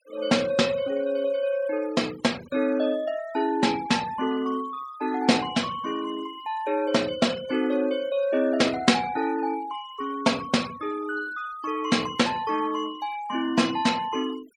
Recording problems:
noise reduction artefacts; signal-to-artefact ratio 19 dB

